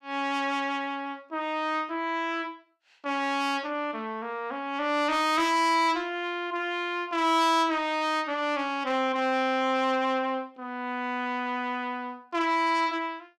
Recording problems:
distortion; soft clipping, signal-to-distortion ratio 12 dB

